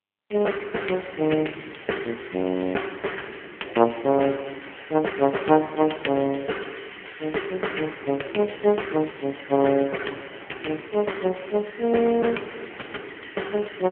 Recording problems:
phone line; 240 Hz to 3.2 kHz, AMR-NB

